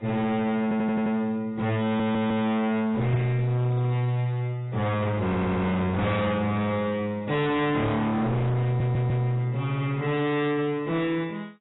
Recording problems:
lossy compression; AAC, log-spectral distance 2 dB, nothing above 3.8 kHz
distorted audio; hard clipping, signal-to-distortion ratio 6 dB
stutter; 4 times, first at 0.5 s

